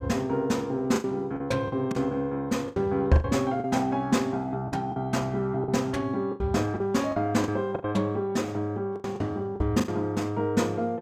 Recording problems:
lost packets; 9% of the sound replaced, filled with the last packet

